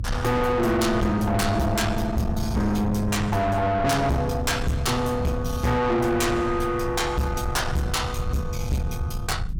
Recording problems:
distorted audio; soft clipping, signal-to-distortion ratio 8 dB
low-frequency rumble; below 150 Hz, SNR 7 dB

